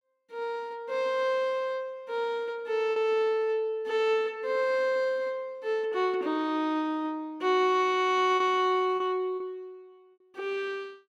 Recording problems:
lost packets; 1.6% of the sound replaced, filled with repeated pitch periods

